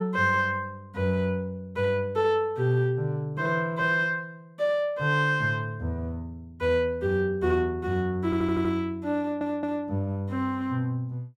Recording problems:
stutter; at 8.5 s and at 9 s

